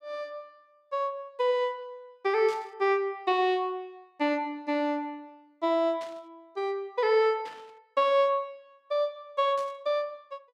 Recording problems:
burst of static; 4 times, first at 2.5 s; peak -13 dB vs average level

